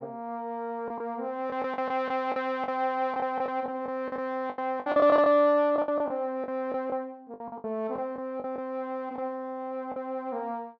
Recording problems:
lost packets; 11% of the sound replaced, filled with the last packet

